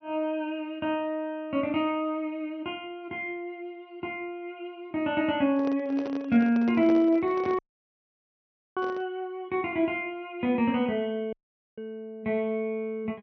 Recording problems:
low-pass filter; nothing above 6 kHz
microphone handling noise; from 5.5 to 9 s; peak -3 dB vs average level
dropout; at 7.5 s for 1 s and at 11 s

